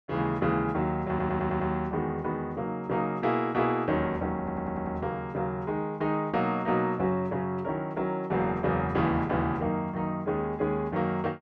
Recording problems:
audio stuttering; at 1 s and at 4.5 s

